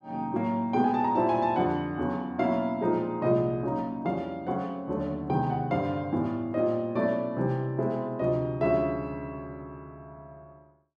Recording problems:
none

